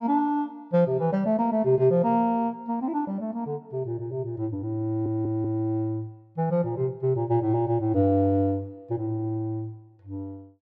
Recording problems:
stutter; at 5 s

